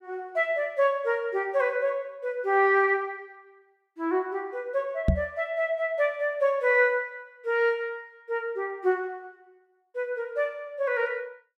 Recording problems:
microphone bump; at 5 s; peak +8 dB vs average level

